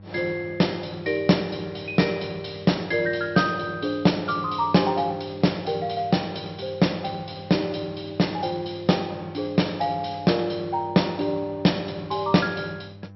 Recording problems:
low-pass filter; nothing above 5.6 kHz
hum; 50 Hz, harmonics up to 1 kHz, SNR 20 dB

